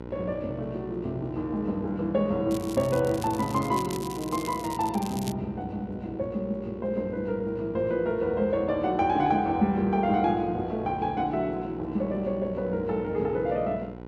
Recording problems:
hum; 60 Hz, harmonics up to 2 kHz, SNR 13 dB
crackling; from 2.5 to 5.5 s; loose cable, SNR 15 dB

